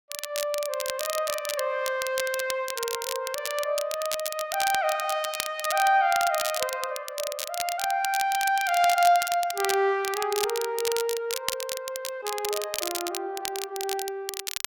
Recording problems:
crackling; vinyl, SNR 6 dB

